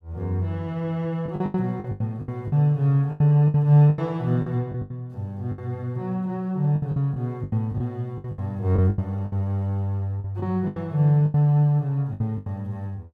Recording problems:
lost packets; 13% of the sound replaced, filled with the last packet

